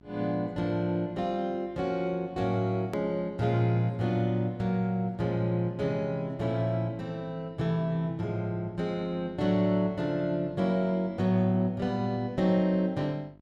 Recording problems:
hum; 50 Hz, harmonics up to 1.4 kHz, SNR 25 dB
edit click; at 3 s

